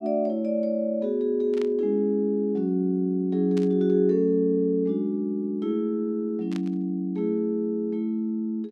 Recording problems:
static burst; at 1.5 s, at 3.5 s and at 6.5 s; peak -12 dB vs average level

